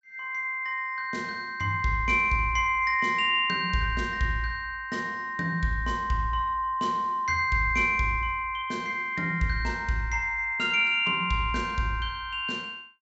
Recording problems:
treble cut off; nothing above 7.7 kHz

